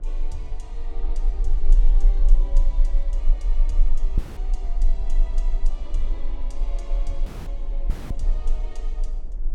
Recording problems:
low-frequency rumble; below 32 Hz, strongest tone 24 Hz, SNR -16 dB
wind noise; below 380 Hz, SNR 7 dB
dropout; at 4 s, at 7.5 s and at 8 s

